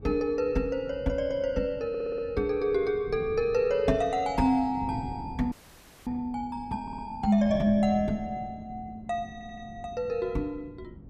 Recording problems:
wind on the microphone; below 240 Hz, SNR 16 dB
stutter; at 2 s, at 7 s and at 9.5 s
frozen audio; at 5.5 s for 0.5 s

